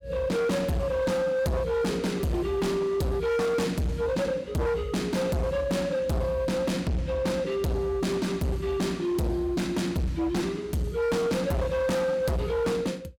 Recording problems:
distortion; hard clipping, signal-to-distortion ratio 7 dB

